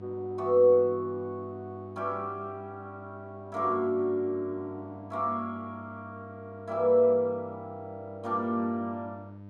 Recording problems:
hum; 50 Hz, harmonics up to 1 kHz, SNR 18 dB

